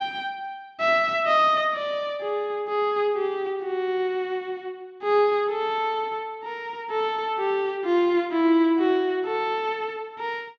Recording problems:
none

